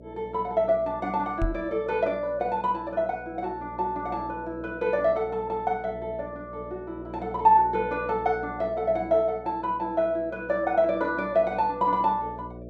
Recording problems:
electrical hum; 60 Hz, harmonics up to 660 Hz, SNR 18 dB
microphone thump; at 1.5 s; peak +1 dB vs average level

